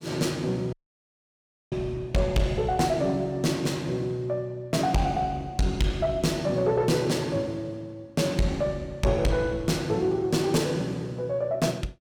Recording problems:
distortion; soft clipping, signal-to-distortion ratio 11 dB
audio cutting out; at 0.5 s for 1 s

